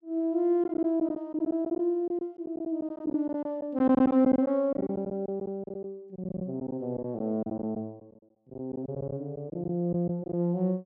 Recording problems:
lost packets; 11% of the sound replaced, filled with silence

